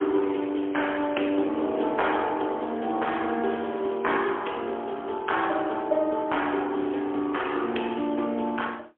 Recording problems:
telephone audio; 260 Hz to 3.3 kHz, AMR-NB, then MP3

